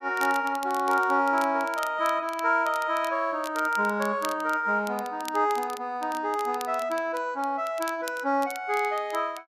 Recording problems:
crackle; vinyl, SNR 18 dB

